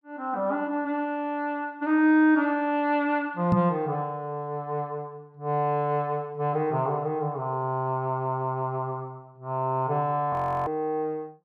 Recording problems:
microphone bump; at 3.5 s; peak +6 dB vs average level
audio freezing; at 10 s

